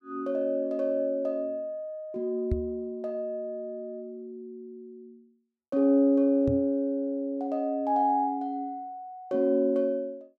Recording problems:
microphone thump; at 2.5 s and at 6.5 s; peak +3 dB vs average level

